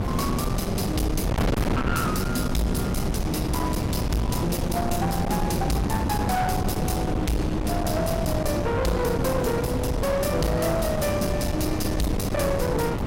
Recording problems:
distorted audio; soft clipping, signal-to-distortion ratio 7 dB
wind on the microphone; below 470 Hz, SNR 1 dB

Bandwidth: 16 kHz